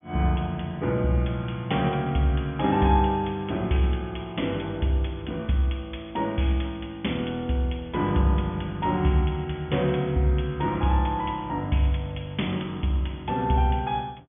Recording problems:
treble cut off; nothing above 3.5 kHz

